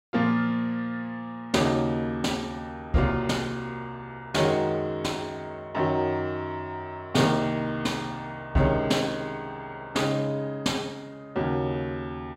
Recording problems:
none

